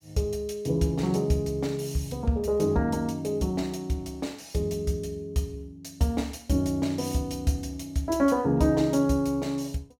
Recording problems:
none

